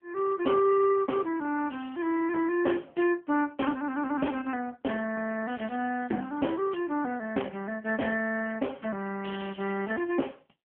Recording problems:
phone line; 240 Hz to 2.8 kHz, AMR-NB

